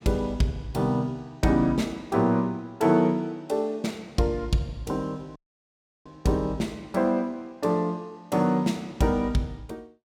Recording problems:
audio cutting out; at 5.5 s for 0.5 s

